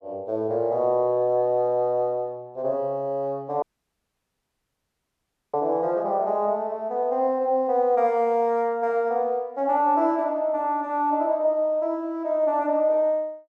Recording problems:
dropout; at 3.5 s for 2 s

